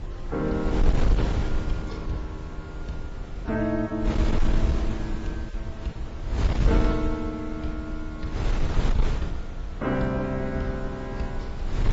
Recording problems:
codec artefacts; AAC, then AAC, log-spectral distance 2 dB, nothing above 7.6 kHz
distortion; soft clipping, signal-to-distortion ratio 12 dB
electrical hum; 50 Hz, harmonics up to 550 Hz, SNR 24 dB
wind on the microphone; below 90 Hz, SNR -1 dB

